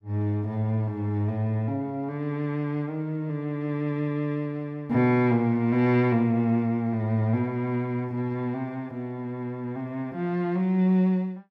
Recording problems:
none

